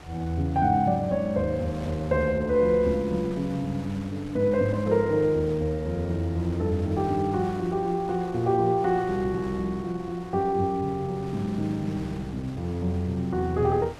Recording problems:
wind on the microphone; below 1.7 kHz, SNR 19 dB

